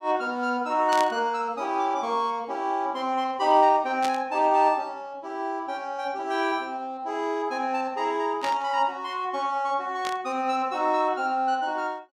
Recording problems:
static burst; 4 times, first at 1 s; peak -3 dB vs average level

